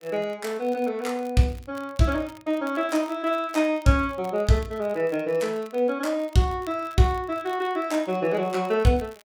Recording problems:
crackle; vinyl, SNR 27 dB

